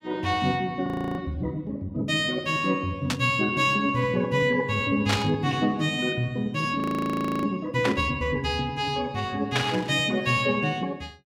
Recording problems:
audio freezing; at 1 s and at 7 s for 0.5 s
static burst; 4 times, first at 3 s; peak +3 dB vs average level

